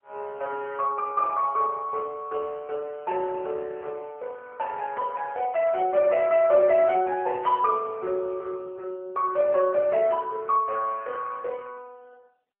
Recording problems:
phone line; 320 Hz to 3 kHz, AMR-NB

